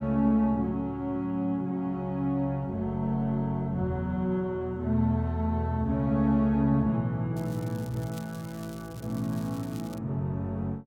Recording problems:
crackle; from 7.5 to 10 s; loose cable, SNR 22 dB

